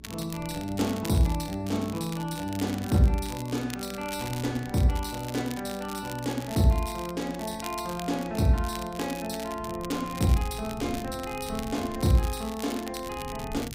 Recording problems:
hum; 60 Hz, harmonics up to 420 Hz, SNR 23 dB
wind on the microphone; below 200 Hz, SNR 17 dB
crackle; vinyl, SNR 14 dB

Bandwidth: 15.5 kHz